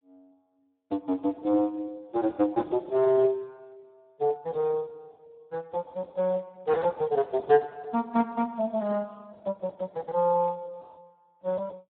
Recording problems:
phone line; 240 Hz to 2 kHz, Speex

